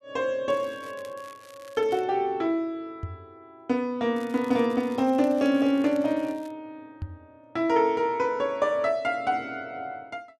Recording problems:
crackle; until 2 s and from 4 to 6.5 s; loose cable, SNR 26 dB
knock on the microphone; at 3 s and at 7 s; peak -4 dB vs average level

